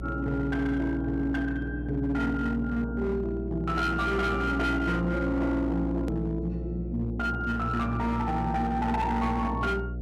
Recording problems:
distorted audio; hard clipping, uneven, signal-to-distortion ratio 12 dB
hum; 60 Hz, harmonics up to 660 Hz, SNR 7 dB
click at an edit; at 6 s

